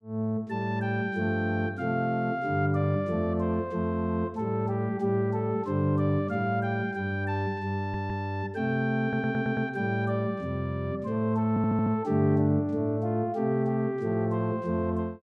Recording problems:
audio stuttering; at 8 s, at 9 s and at 11 s

